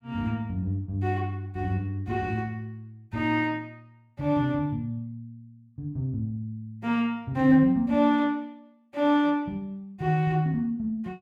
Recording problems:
none

